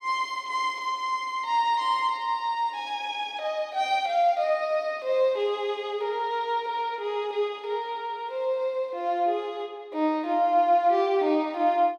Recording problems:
none

